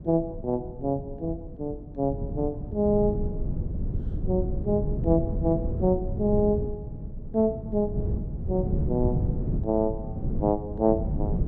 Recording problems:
low-frequency rumble; below 170 Hz, SNR 4 dB

